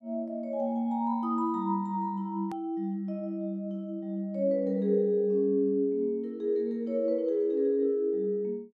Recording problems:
edit click; at 2.5 s

